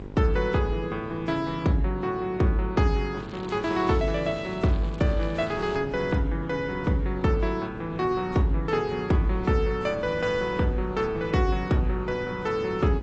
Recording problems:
lossy compression; G.722, then AAC, log-spectral distance 2 dB, nothing above 7.6 kHz
electrical hum; 50 Hz, harmonics up to 1.6 kHz, SNR 15 dB
wind noise; below 300 Hz, SNR 20 dB
crackling; from 3 to 6 s; loose cable, SNR 23 dB

